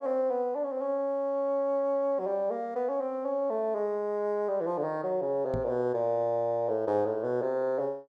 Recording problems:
microphone bump; at 5.5 s; peak -2 dB vs average level

